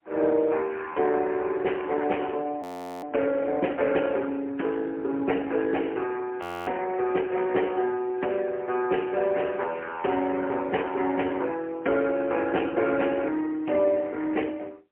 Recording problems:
telephone audio; 240 Hz to 3.1 kHz, AMR-NB, then MP3
audio freezing; at 2.5 s and at 6.5 s

